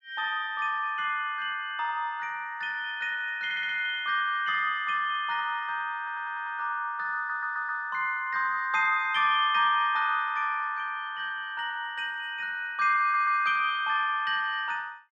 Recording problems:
stutter; 4 times, first at 3.5 s

